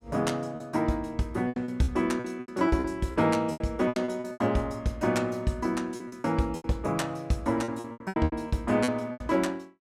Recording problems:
lost packets; 15% of the sound replaced, filled with repeated pitch periods

